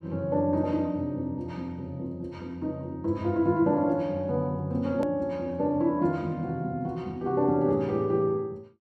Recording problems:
hard cut with a click; at 5 s

